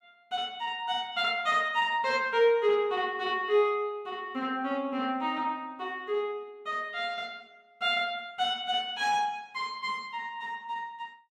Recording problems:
none

